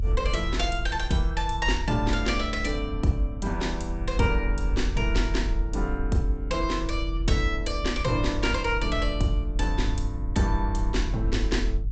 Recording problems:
low-pass filter; nothing above 8 kHz
low-frequency rumble; below 52 Hz, strongest tone 44 Hz, SNR 3 dB

